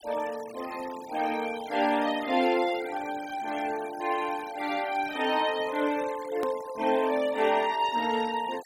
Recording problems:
denoising artefacts; signal-to-artefact ratio 16 dB
hard cut with a click; at 6.5 s

